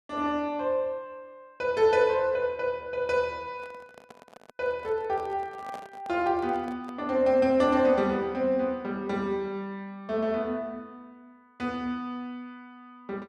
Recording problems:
handling noise; from 3.5 to 7 s; peak -10 dB vs average level

